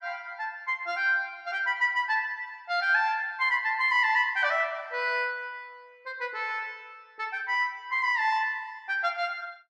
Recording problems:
none

